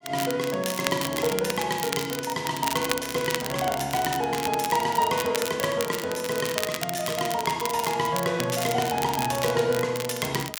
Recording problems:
crackle; vinyl, SNR 6 dB

